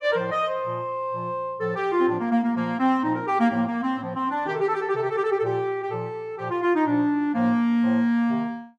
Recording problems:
none

